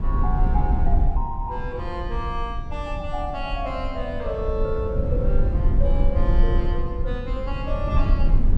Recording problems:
low-frequency rumble; below 68 Hz, SNR -5 dB

